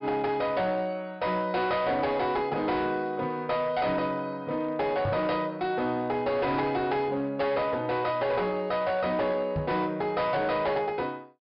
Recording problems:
treble cut off; nothing above 5.5 kHz
distorted audio; hard clipping, signal-to-distortion ratio 11 dB
microphone thump; at 5 s and at 9.5 s; peak +1 dB vs average level

